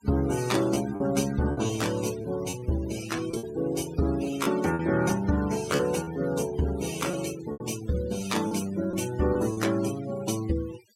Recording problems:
noise reduction artefacts; signal-to-artefact ratio 14 dB
packet loss; 6% of the sound replaced, filled with repeated pitch periods

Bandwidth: 16 kHz